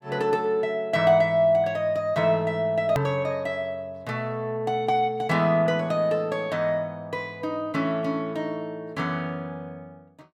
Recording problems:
edit click; at 3 s

